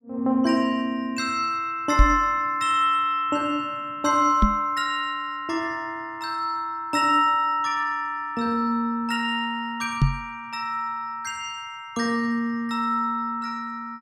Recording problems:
microphone thump; at 2 s, at 4.5 s and at 10 s; peak +9 dB vs average level

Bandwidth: 16 kHz